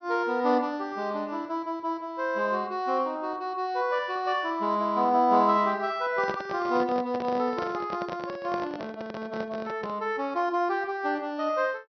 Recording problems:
treble missing; nothing above 5.9 kHz
handling noise; from 6 to 10 s; peak -3 dB vs average level

